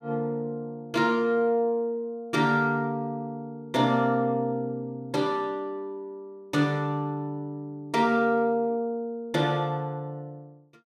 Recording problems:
none

